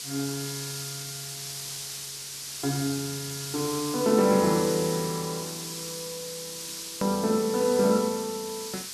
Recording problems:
background hiss; SNR 7 dB
hard cut with a click; at 7 s

